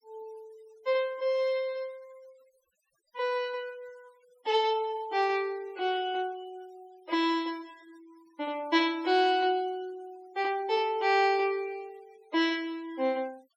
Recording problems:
denoising artefacts; signal-to-artefact ratio 27 dB

